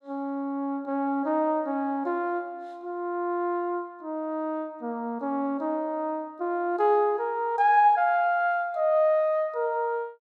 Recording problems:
none

